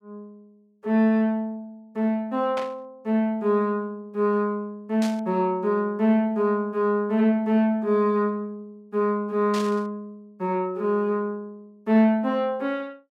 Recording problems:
static burst; at 2.5 s, at 5 s and at 9.5 s; peak -7 dB vs average level

